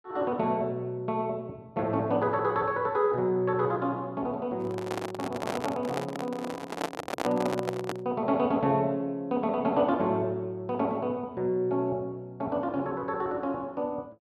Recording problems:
handling noise; from 4.5 to 8 s; peak +3 dB vs average level

